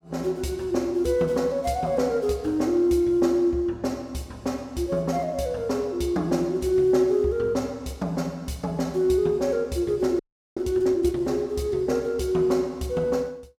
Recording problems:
audio freezing; at 10 s

